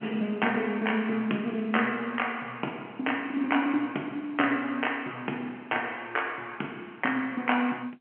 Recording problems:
telephone audio; 260 Hz to 3.1 kHz, G.711

